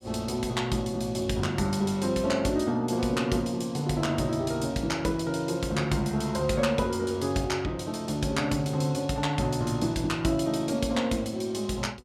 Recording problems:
none

